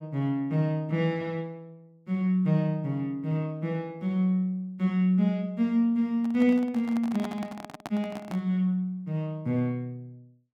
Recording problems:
microphone handling noise; from 6 to 8.5 s; peak -5 dB vs average level

